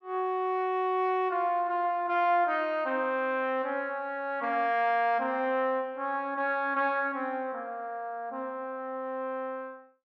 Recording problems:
none

